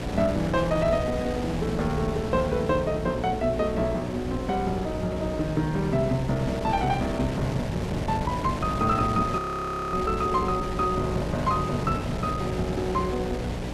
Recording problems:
hum; 60 Hz, harmonics up to 600 Hz, SNR 9 dB
wind noise; below 790 Hz, SNR 8 dB
audio freezing; at 9.5 s for 0.5 s

